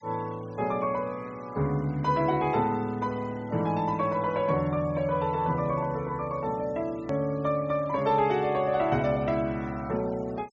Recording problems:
treble missing; nothing above 8 kHz
denoising artefacts; signal-to-artefact ratio 25 dB
edit click; at 7 s

